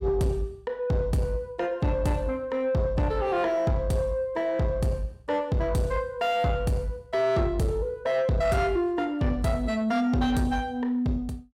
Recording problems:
distortion; soft clipping, signal-to-distortion ratio 12 dB

